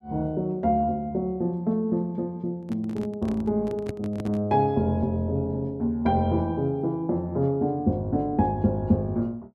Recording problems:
microphone handling noise; from 2.5 to 4.5 s; peak -4 dB vs average level

